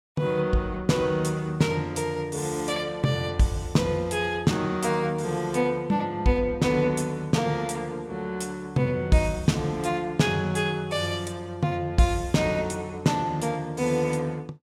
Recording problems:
none

